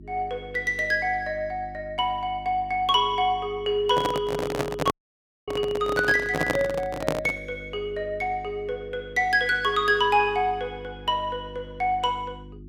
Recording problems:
hum; 50 Hz, harmonics up to 350 Hz, SNR 19 dB
handling noise; from 4 to 7.5 s; peak +4 dB vs average level
audio cutting out; at 5 s for 0.5 s

